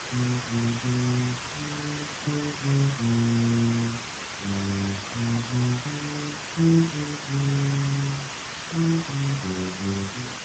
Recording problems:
lossy compression; Speex, log-spectral distance 12 dB, nothing above 13.1 kHz
background hiss; SNR 5 dB
handling noise; from 4.5 to 6 s; peak -9 dB vs average level

